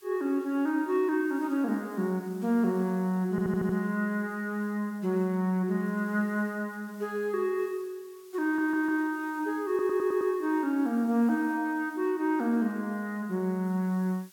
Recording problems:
hiss; slope +2 dB per octave, SNR 27 dB
stutter; at 3.5 s, at 8.5 s and at 9.5 s

